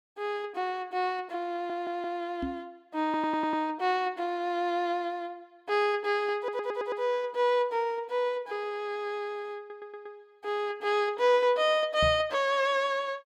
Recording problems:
audio stuttering; 4 times, first at 1.5 s
knock on the microphone; at 2.5 s and at 12 s; peak -1 dB vs average level

